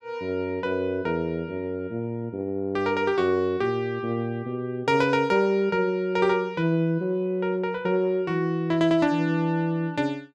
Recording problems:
none

